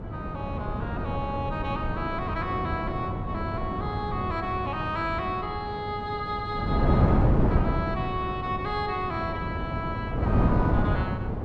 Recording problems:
electrical hum; 50 Hz, harmonics up to 800 Hz, SNR 11 dB
wind noise; below 310 Hz, SNR -3 dB

